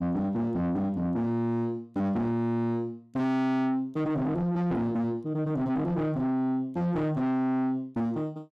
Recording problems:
distortion; soft clipping, signal-to-distortion ratio 7 dB

